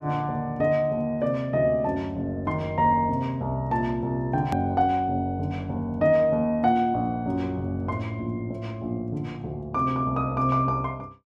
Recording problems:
hard cut with a click; at 4.5 s

